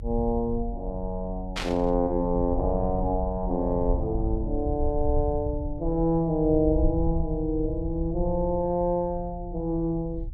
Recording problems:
low-frequency rumble; below 72 Hz, SNR 6 dB
burst of static; at 1.5 s; peak 0 dB vs average level

